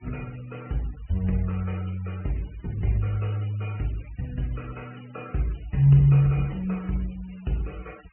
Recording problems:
treble missing; nothing above 3 kHz
denoising artefacts; signal-to-artefact ratio 25 dB

